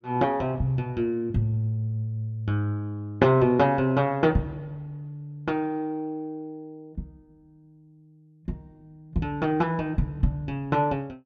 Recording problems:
none

